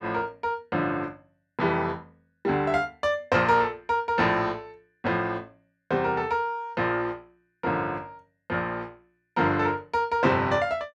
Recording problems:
none

